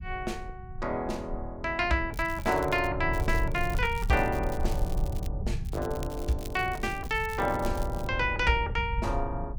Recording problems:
low-frequency rumble; below 90 Hz, SNR 6 dB
crackle; at 2 s, from 3 to 5.5 s and from 5.5 to 8 s; loose cable, SNR 18 dB

